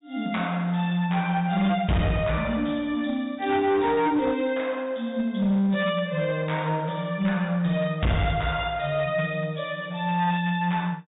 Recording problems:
low-pass filter; nothing above 4 kHz
distortion; hard clipping, uneven, signal-to-distortion ratio 11 dB

